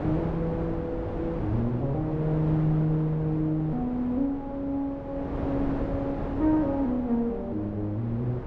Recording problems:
wind noise; below 540 Hz, SNR 6 dB

